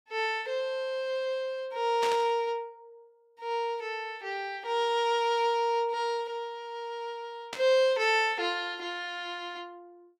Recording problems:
static burst; at 2 s and at 7.5 s; peak -2 dB vs average level

